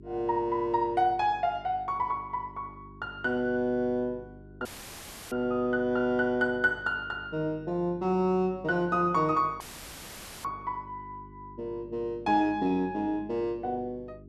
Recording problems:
hum; 50 Hz, harmonics up to 400 Hz, SNR 21 dB
audio cutting out; at 4.5 s for 0.5 s and at 9.5 s for 1 s; filled with static

